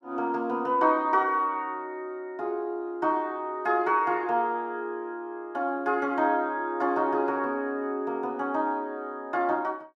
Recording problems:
none

